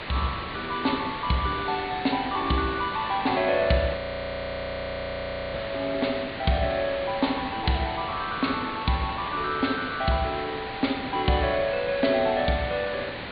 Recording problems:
treble cut off; nothing above 4.5 kHz
background hiss; SNR 7 dB
frozen audio; at 4 s for 1.5 s

